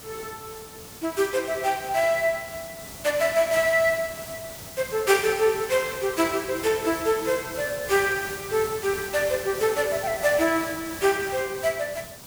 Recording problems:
hiss; SNR 13 dB

